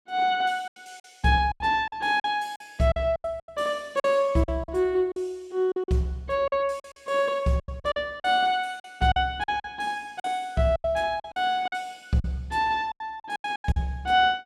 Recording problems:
packet loss; 13% of the sound replaced, filled with silence

